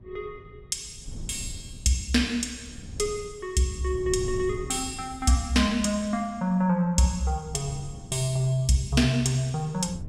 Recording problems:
wind on the microphone; below 140 Hz, SNR 16 dB

